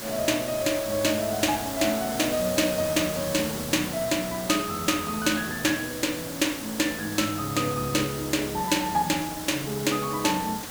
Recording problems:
background hiss; slope -2 dB per octave, SNR 8 dB

